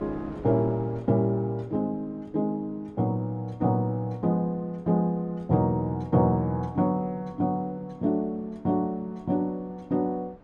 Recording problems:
wind noise; below 620 Hz, SNR 24 dB

